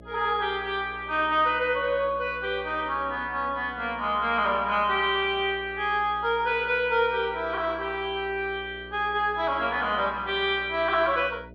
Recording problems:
hum; 60 Hz, harmonics up to 660 Hz, SNR 21 dB

